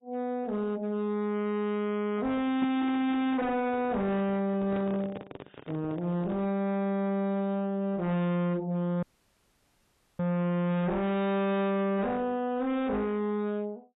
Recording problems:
lossy codec; AAC, log-spectral distance 2 dB, nothing above 3.2 kHz
distorted audio; hard clipping, signal-to-distortion ratio 6 dB
microphone handling noise; from 3 to 6.5 s; peak -5 dB vs average level
dropout; at 9 s for 1 s

